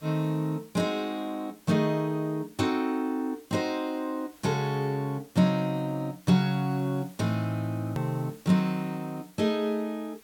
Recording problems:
background hiss; slope -1 dB per octave, SNR 26 dB
hard cut with a click; at 8 s

